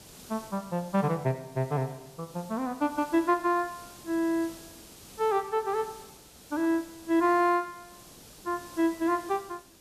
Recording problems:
background hiss; SNR 19 dB

